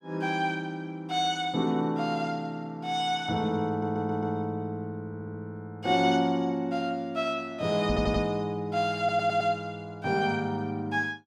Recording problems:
stutter; 4 times, first at 3.5 s
microphone bump; at 8 s; peak 0 dB vs average level

